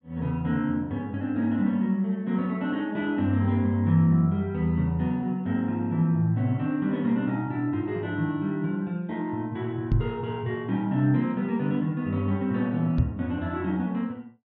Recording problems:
treble missing; nothing above 6.7 kHz
microphone bump; at 10 s and at 13 s; peak +6 dB vs average level

